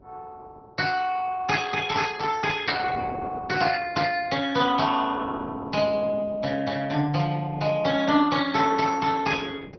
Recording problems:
treble missing; nothing above 5.8 kHz
lossy compression; Opus, log-spectral distance 4 dB
wind noise; below 460 Hz, SNR 18 dB

